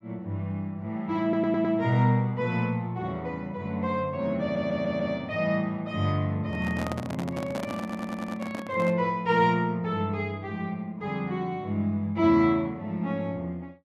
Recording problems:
audio stuttering; at 1 s, at 4.5 s and at 8 s
handling noise; from 6.5 to 9 s; peak -2 dB vs average level

